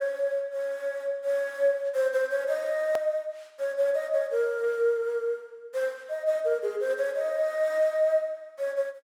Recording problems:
edit click; at 3 s

